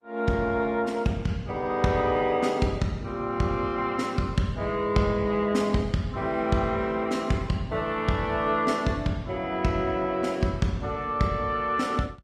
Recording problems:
lossy compression; Opus, log-spectral distance 2 dB, nothing above 16.6 kHz

